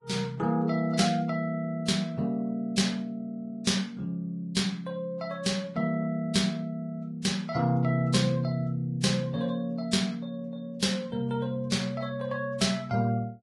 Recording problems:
codec artefacts; Vorbis, log-spectral distance 2 dB, nothing above 11 kHz

